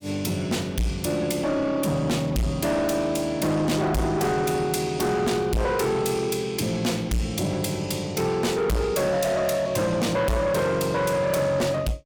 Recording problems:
distorted audio; soft clipping, signal-to-distortion ratio 6 dB

